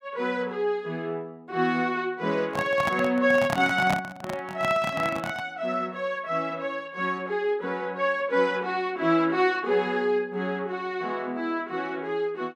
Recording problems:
microphone handling noise; from 2.5 to 5.5 s; peak +3 dB vs average level

